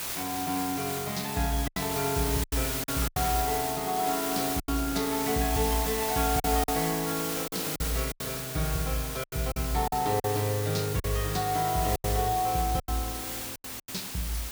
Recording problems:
background hiss; slope 0 dB per octave, SNR 3 dB
packet loss; 8% of the sound replaced, filled with silence

